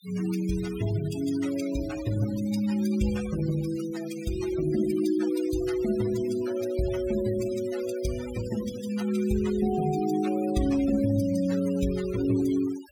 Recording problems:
noise reduction artefacts; signal-to-artefact ratio 14 dB

